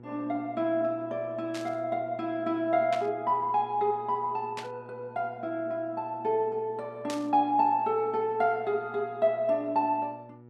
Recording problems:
hum; 60 Hz, harmonics up to 1.3 kHz, SNR 21 dB
static burst; 4 times, first at 1.5 s; peak -5 dB vs average level

